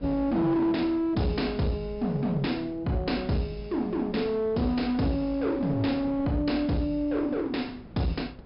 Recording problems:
treble cut off; nothing above 5.2 kHz
distortion; hard clipping, uneven, signal-to-distortion ratio 10 dB
wind noise; below 340 Hz, SNR 19 dB

